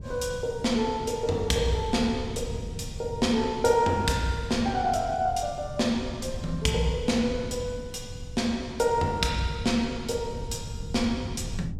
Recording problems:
wind on the microphone; below 130 Hz, SNR 12 dB

